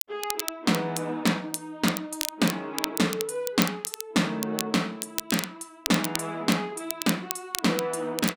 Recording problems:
crackling; vinyl, SNR 6 dB

